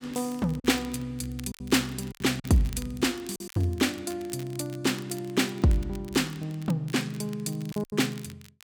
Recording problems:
crackle; vinyl, SNR 21 dB
lost packets; 6% of the sound replaced, filled with silence

